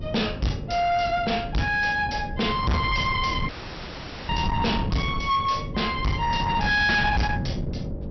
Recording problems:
low-pass filter; nothing above 5.8 kHz
distorted audio; soft clipping, signal-to-distortion ratio 6 dB
hum; 50 Hz, harmonics up to 600 Hz, SNR 18 dB
wind on the microphone; below 280 Hz, SNR 7 dB
dropout; at 3.5 s for 1 s

